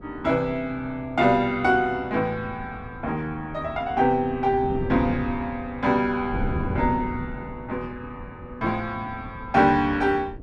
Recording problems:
wind on the microphone; below 240 Hz, SNR 12 dB

